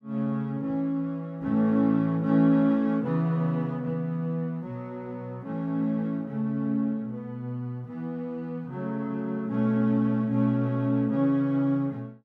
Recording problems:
none

